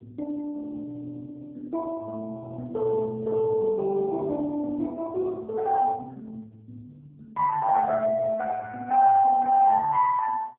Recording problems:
phone line; 300 Hz to 2.2 kHz, AMR-NB

